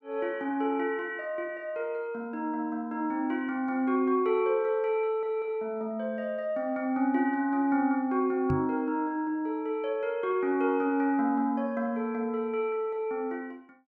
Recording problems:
microphone thump; at 8.5 s; peak +2 dB vs average level

